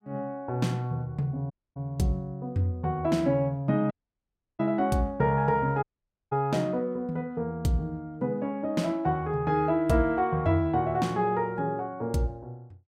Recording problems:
dropout; at 1.5 s, at 4 s for 0.5 s and at 6 s

